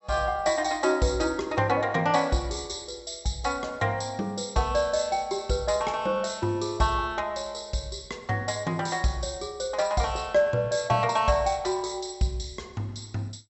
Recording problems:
treble cut off; nothing above 7.7 kHz

